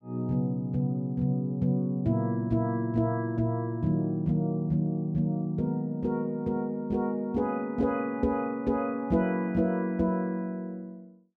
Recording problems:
none

